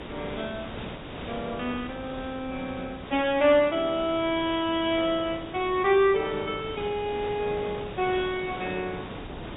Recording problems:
low-pass filter; nothing above 4 kHz
hiss; SNR 13 dB
wind on the microphone; below 510 Hz, SNR 18 dB

